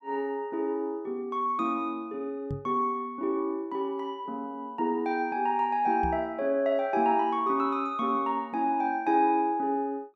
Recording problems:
microphone thump; at 2.5 s and at 6 s; peak -3 dB vs average level

